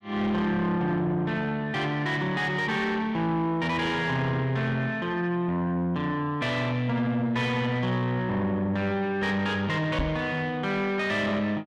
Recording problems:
distorted audio; soft clipping, signal-to-distortion ratio 12 dB
knock on the microphone; at 10 s; peak +2 dB vs average level

